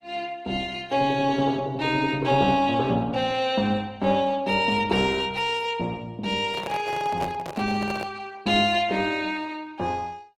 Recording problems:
lossy compression; Opus, log-spectral distance 3 dB
handling noise; from 6.5 to 8 s; peak -3 dB vs average level

